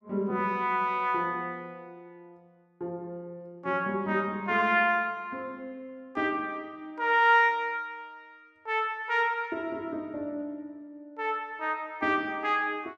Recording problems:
none

